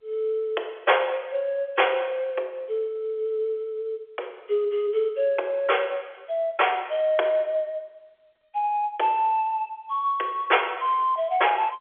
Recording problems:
telephone audio; 340 Hz to 3.4 kHz, G.711

